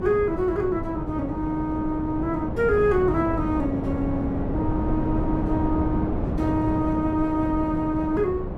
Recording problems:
wind noise; below 350 Hz, SNR 4 dB

